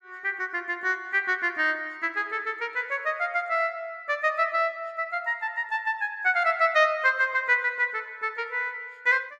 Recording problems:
none

